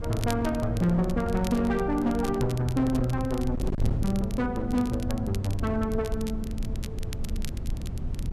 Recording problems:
distorted audio; hard clipping, uneven, signal-to-distortion ratio 10 dB
wind noise; below 120 Hz, SNR 7 dB
crackle; vinyl, SNR 18 dB

